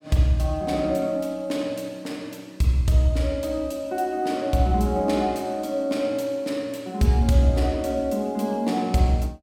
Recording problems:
none

